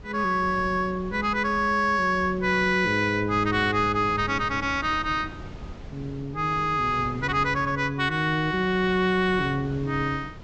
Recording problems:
treble missing; nothing above 8 kHz
wind noise; below 300 Hz, SNR 17 dB

